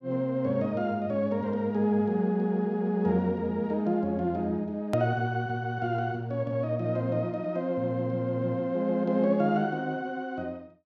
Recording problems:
edit click; at 5 s

